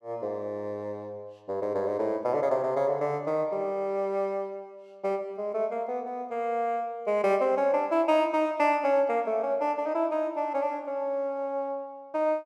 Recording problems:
none

